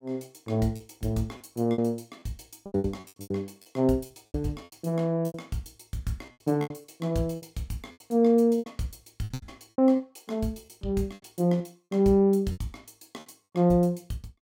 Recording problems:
lost packets; 13% of the sound replaced, filled with repeated pitch periods

